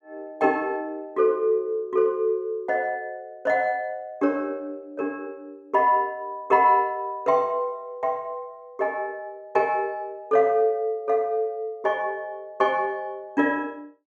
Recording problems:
none

